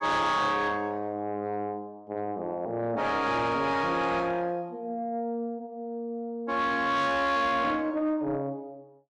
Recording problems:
distorted audio; soft clipping, signal-to-distortion ratio 10 dB

